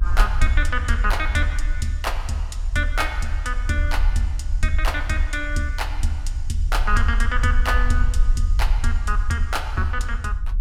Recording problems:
rumble; below 46 Hz, SNR 0 dB

